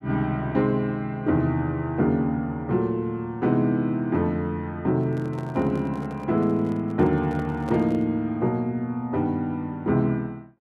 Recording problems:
microphone handling noise; from 5 to 8 s; peak -8 dB vs average level

